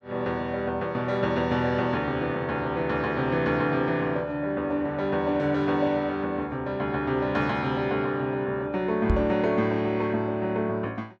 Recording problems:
microphone bump; at 9 s; peak +5 dB vs average level

